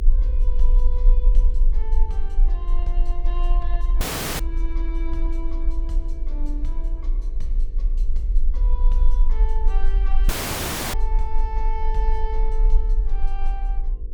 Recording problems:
hum; 50 Hz, harmonics up to 500 Hz, SNR 14 dB
low-frequency rumble; below 40 Hz, SNR -13 dB
dropout; at 4 s and at 10 s for 0.5 s

